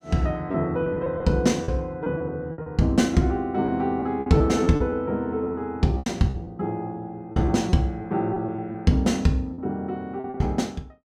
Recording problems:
packet loss; 9% of the sound replaced, filled with repeated pitch periods

